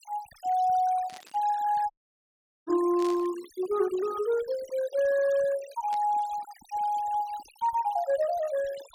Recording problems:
denoising artefacts; signal-to-artefact ratio 20 dB
burst of static; at 1 s, at 3 s and at 6 s; peak -12 dB vs average level
audio cutting out; at 2 s for 1 s

